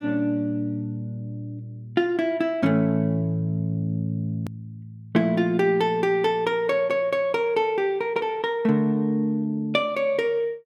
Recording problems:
edit click; at 4.5 s

